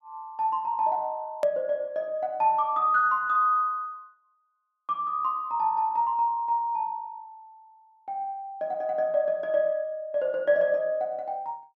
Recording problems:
hard cut with a click; at 1.5 s

